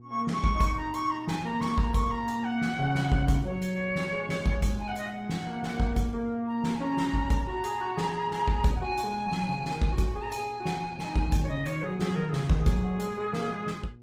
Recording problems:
codec artefacts; Opus, log-spectral distance 3 dB
electrical hum; 60 Hz, harmonics up to 480 Hz, SNR 23 dB

